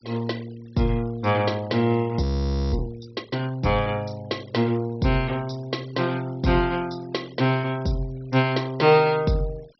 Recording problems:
low-pass filter; nothing above 5.8 kHz
noise reduction artefacts; signal-to-artefact ratio 24 dB
frozen audio; at 2 s for 0.5 s

